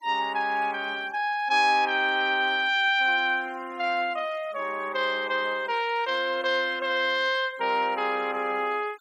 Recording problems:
noise reduction artefacts; signal-to-artefact ratio 25 dB

